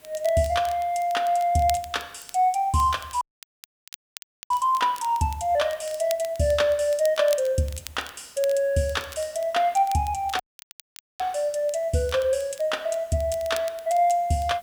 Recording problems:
background hiss; slope -3 dB per octave, SNR 28 dB
crackle; vinyl, SNR 20 dB
audio cutting out; at 3 s for 1.5 s and at 10 s for 1 s

